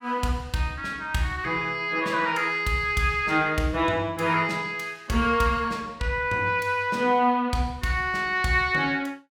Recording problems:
none

